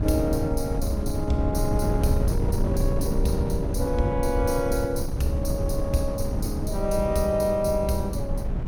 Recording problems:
wind noise; below 140 Hz, SNR 1 dB

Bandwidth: 17 kHz